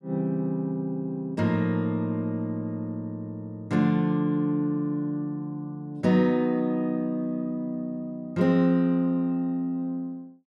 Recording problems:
none

